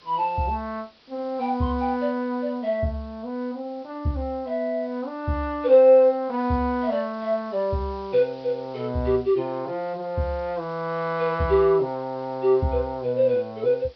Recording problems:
low-pass filter; nothing above 5.5 kHz
hiss; SNR 29 dB

